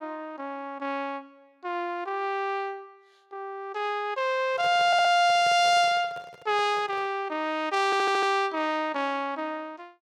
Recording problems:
handling noise; from 4.5 to 7 s; peak -12 dB vs average level
stutter; at 5 s and at 8 s

